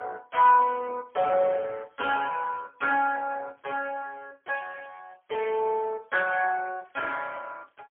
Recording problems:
phone line; 300 Hz to 3 kHz, AMR-NB, then MP3

